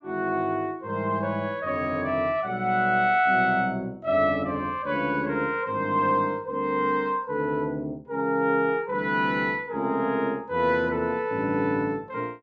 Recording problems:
none

